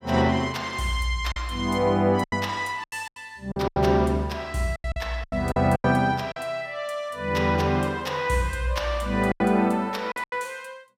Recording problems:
lost packets; 9% of the sound replaced, filled with silence

